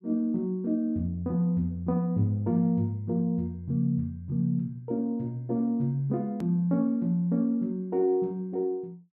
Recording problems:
edit click; at 6.5 s

